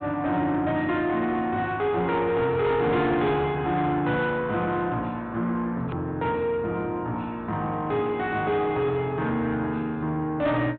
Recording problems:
low-pass filter; nothing above 4 kHz
distorted audio; soft clipping, signal-to-distortion ratio 11 dB
edit click; at 6 s

